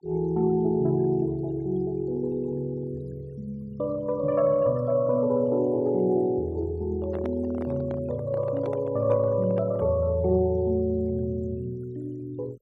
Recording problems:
denoising artefacts; signal-to-artefact ratio 27 dB
handling noise; from 7 to 10 s; peak -7 dB vs average level

